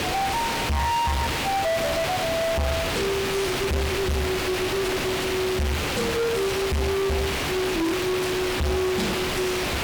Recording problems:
distortion; soft clipping, signal-to-distortion ratio 6 dB
background hiss; slope -3 dB per octave, SNR 1 dB

